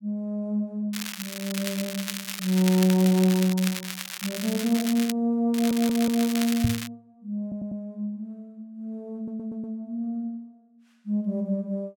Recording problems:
crackle; from 1 to 3.5 s, from 3.5 to 5 s and from 5.5 to 7 s; loose cable, SNR 7 dB
audio stuttering; at 5.5 s, at 7.5 s and at 9 s
knock on the microphone; at 6.5 s; peak +6 dB vs average level

